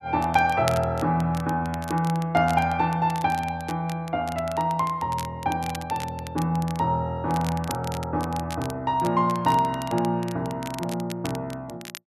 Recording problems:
crackle; vinyl, SNR 16 dB

